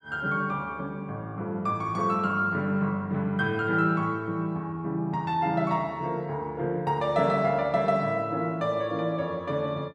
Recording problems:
none

